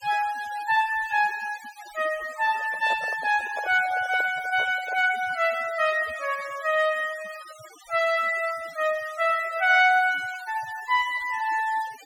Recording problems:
denoising artefacts; signal-to-artefact ratio 18 dB
microphone handling noise; from 2.5 to 5 s; peak -8 dB vs average level

